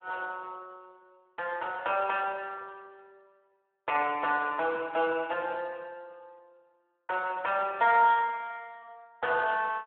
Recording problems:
telephone audio; 320 Hz to 3.4 kHz, Speex

